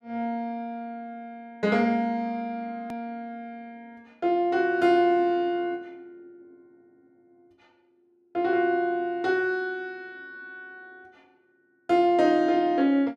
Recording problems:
click at an edit; at 3 s

